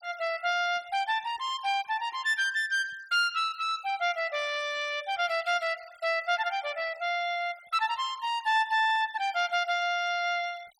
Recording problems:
denoising artefacts; signal-to-artefact ratio 23 dB

